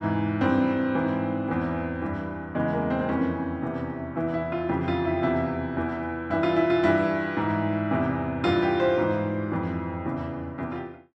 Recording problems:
none

